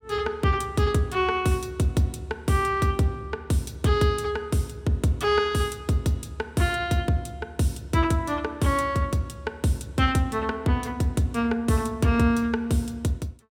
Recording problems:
none

